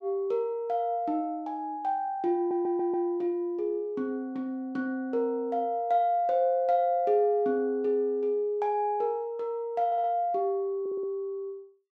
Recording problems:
stutter; at 2.5 s, at 10 s and at 11 s

